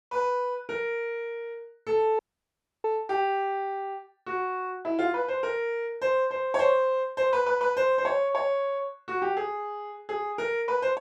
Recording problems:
dropout; at 2 s for 0.5 s

